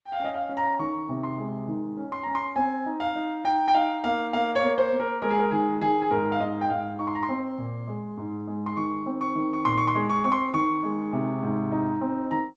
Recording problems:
codec artefacts; G.722, then Opus, log-spectral distance 2 dB

